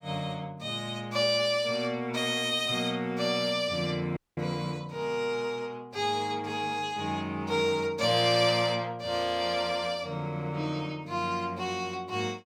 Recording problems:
audio cutting out; at 4 s

